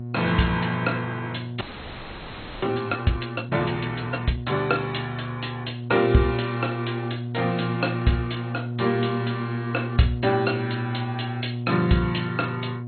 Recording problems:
lossy codec; MP2, log-spectral distance 6 dB, nothing above 4.2 kHz
mains hum; 60 Hz, harmonics up to 720 Hz, SNR 5 dB
audio freezing; at 1.5 s for 1 s

